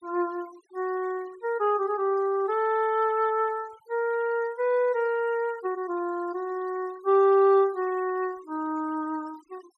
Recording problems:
denoising artefacts; signal-to-artefact ratio 26 dB

